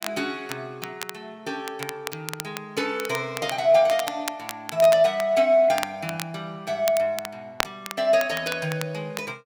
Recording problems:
crackling; vinyl, SNR 12 dB

